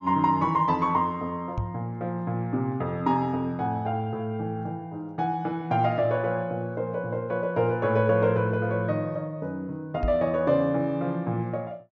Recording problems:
low-pass filter; nothing above 8 kHz
microphone thump; at 1.5 s and at 10 s; peak +1 dB vs average level

